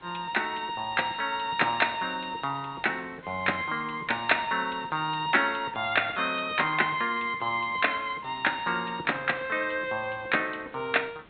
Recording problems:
treble cut off; nothing above 4 kHz
background hiss; SNR 26 dB

